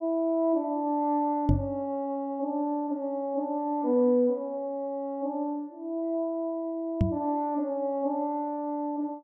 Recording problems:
microphone bump; at 1.5 s and at 7 s; peak +8 dB vs average level

